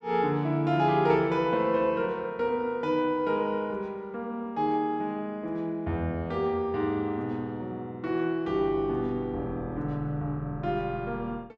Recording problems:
none

